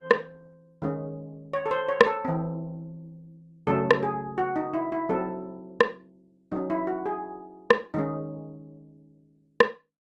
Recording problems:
codec artefacts; Opus, log-spectral distance 2 dB

